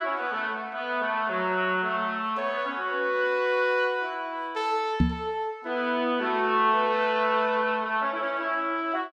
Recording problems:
microphone bump; at 5 s; peak +8 dB vs average level

